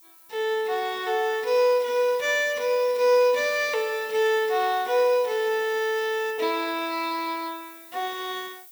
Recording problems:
hiss; slope +3 dB per octave, SNR 20 dB

